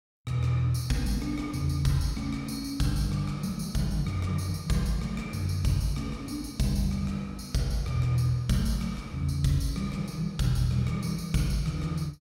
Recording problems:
none

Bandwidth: 16 kHz